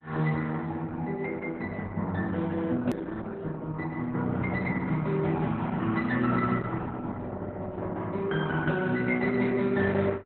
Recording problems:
codec artefacts; Opus, log-spectral distance 3 dB, nothing above 13.1 kHz
click at an edit; at 3 s

